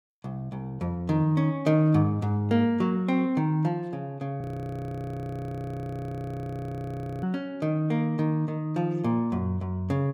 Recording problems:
audio freezing; at 4.5 s for 3 s

